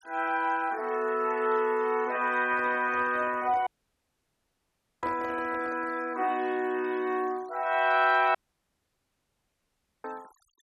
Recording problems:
denoising artefacts; signal-to-artefact ratio 25 dB
microphone handling noise; from 2.5 to 6 s; peak -8 dB vs average level
audio cutting out; at 3.5 s for 1.5 s and at 8.5 s for 1.5 s

